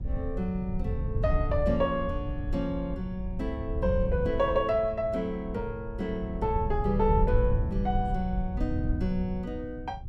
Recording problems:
wind on the microphone; below 98 Hz, SNR 3 dB

